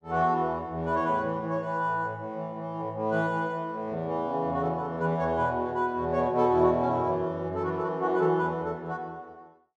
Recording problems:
none

